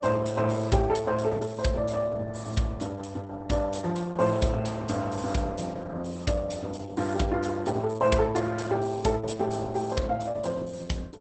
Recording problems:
lossy compression; Opus, log-spectral distance 5 dB, nothing above 8.2 kHz

